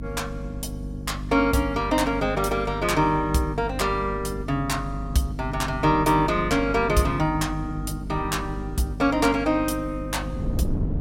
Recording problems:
hum; 50 Hz, harmonics up to 300 Hz, SNR 9 dB
wind noise; below 210 Hz, SNR 14 dB

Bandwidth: 16 kHz